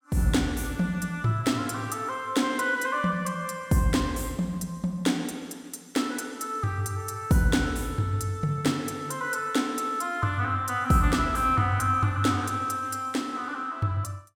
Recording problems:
none

